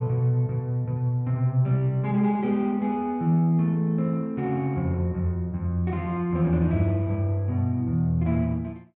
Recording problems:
none

